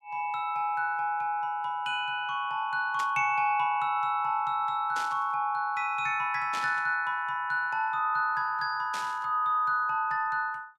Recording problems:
burst of static; 4 times, first at 3 s; peak -6 dB vs average level

